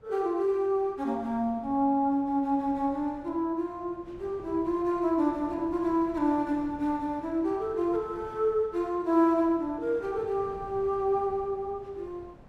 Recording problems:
wind on the microphone; below 500 Hz, SNR 22 dB

